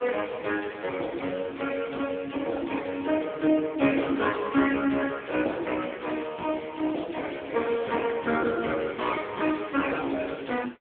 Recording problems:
telephone audio; 150 Hz to 3.5 kHz, AMR-NB

